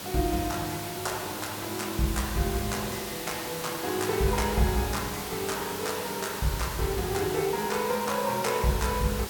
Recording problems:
hiss; slope -2 dB per octave, SNR 6 dB

